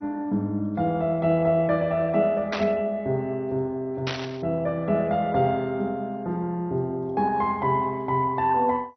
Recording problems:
codec artefacts; MP2, log-spectral distance 2 dB
static burst; at 2.5 s and at 4 s; peak -1 dB vs average level

